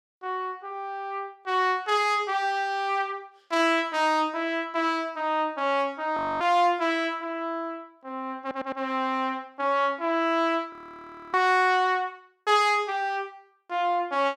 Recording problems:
audio freezing; at 6 s and at 11 s for 0.5 s
stutter; at 8.5 s

